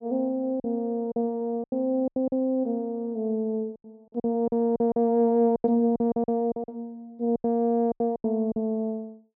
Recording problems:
packet loss; 12% of the sound replaced, filled with silence

